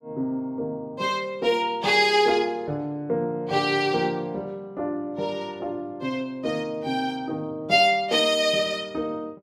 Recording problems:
none

